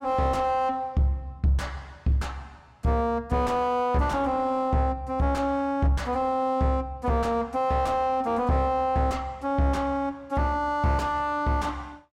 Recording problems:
distorted audio; soft clipping, signal-to-distortion ratio 7 dB

